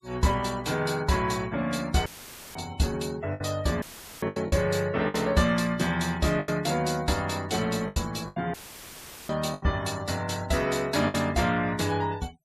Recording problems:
noise reduction artefacts; signal-to-artefact ratio 22 dB
packet loss; 5% of the sound replaced, filled with the last packet
audio cutting out; at 2 s, at 4 s and at 8.5 s for 1 s; filled with static

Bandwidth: 14.5 kHz